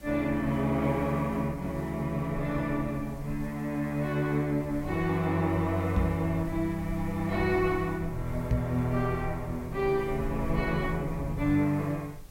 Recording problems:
background hiss; slope -2 dB per octave, SNR 25 dB
rumble; below 84 Hz, SNR 14 dB
knock on the microphone; at 6 s and at 8.5 s; peak +5 dB vs average level

